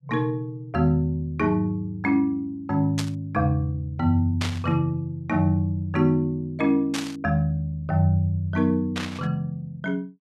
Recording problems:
static burst; 4 times, first at 3 s; peak -1 dB vs average level

